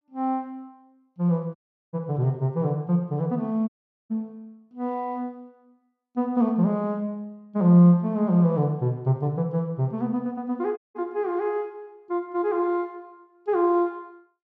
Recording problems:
dropout; at 1.5 s, at 3.5 s and at 11 s

